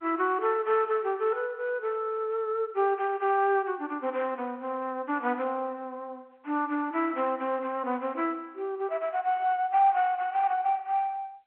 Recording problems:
phone line; 300 Hz to 3.4 kHz, G.711

